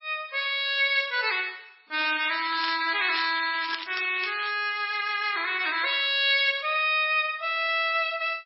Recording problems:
lossy compression; MP3, then AAC, log-spectral distance 7 dB, nothing above 4.5 kHz
crackle; from 2 to 4.5 s; loose cable, SNR 9 dB

